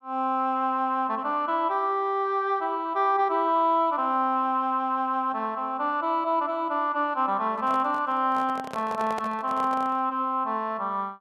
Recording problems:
microphone handling noise; from 7.5 to 10 s; peak -5 dB vs average level

